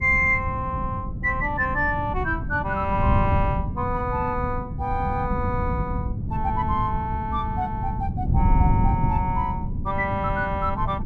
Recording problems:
wind on the microphone; below 160 Hz, SNR 2 dB

